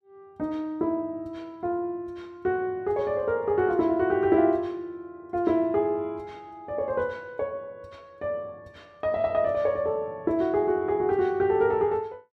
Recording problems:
none

